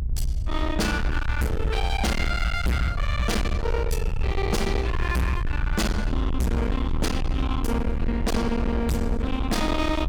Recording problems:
distorted audio; hard clipping, signal-to-distortion ratio 6 dB
rumble; below 98 Hz, SNR 1 dB

